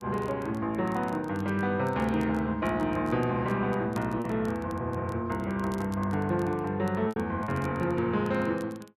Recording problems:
crackle; vinyl, SNR 27 dB
packet loss; 1.8% of the sound replaced, filled with repeated pitch periods

